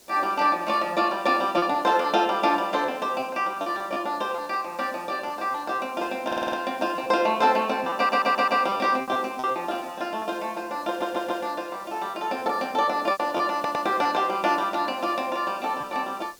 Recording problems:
background hiss; SNR 25 dB
packet loss; 6% of the sound replaced, filled with repeated pitch periods
audio stuttering; 4 times, first at 6.5 s

